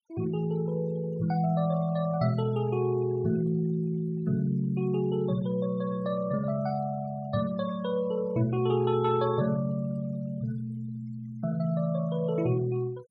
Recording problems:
noise reduction artefacts; signal-to-artefact ratio 24 dB

